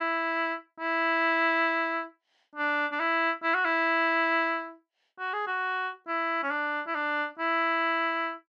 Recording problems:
none

